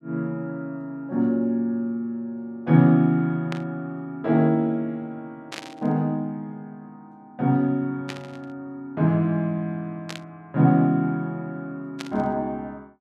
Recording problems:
burst of static; 5 times, first at 3.5 s; peak -6 dB vs average level

